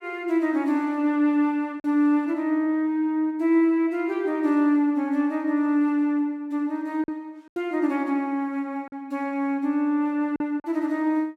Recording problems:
lost packets; 2% of the sound replaced, filled with silence

